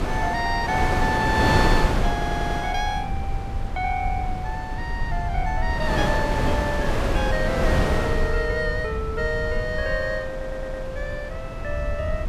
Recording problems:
low-frequency rumble; below 82 Hz, strongest tone 26 Hz, SNR 6 dB
wind noise; below 730 Hz, SNR 0 dB
audio stuttering; at 2 s and at 10 s

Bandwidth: 14.5 kHz